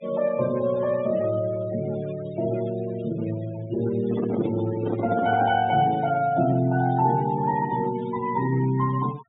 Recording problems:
treble cut off; nothing above 4 kHz
denoising artefacts; signal-to-artefact ratio 17 dB
handling noise; from 4 to 5.5 s; peak -3 dB vs average level

